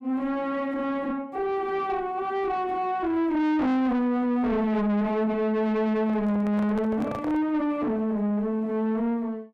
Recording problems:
distortion; soft clipping, signal-to-distortion ratio 6 dB
handling noise; from 6 to 7.5 s; peak -4 dB vs average level

